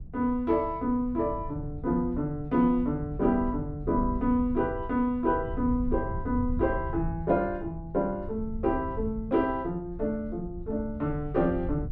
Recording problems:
low-frequency rumble; below 96 Hz, SNR 10 dB

